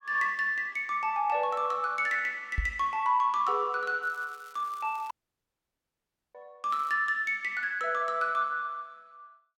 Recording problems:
microphone thump; at 2.5 s; peak +2 dB vs average level
crackle; from 4 to 5 s and at 6.5 s; loose cable, SNR 28 dB
dropout; at 5 s for 1 s

